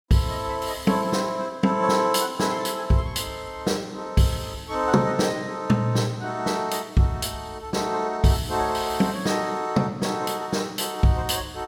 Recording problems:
none

